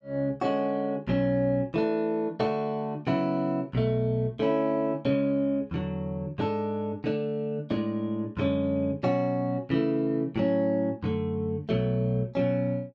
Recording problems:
none

